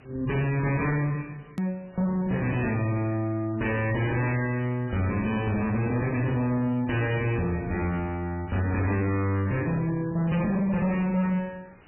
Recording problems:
codec artefacts; MP3, log-spectral distance 4 dB, nothing above 2.7 kHz
distortion; hard clipping, signal-to-distortion ratio 10 dB
background hiss; SNR 28 dB
edit click; at 1.5 s

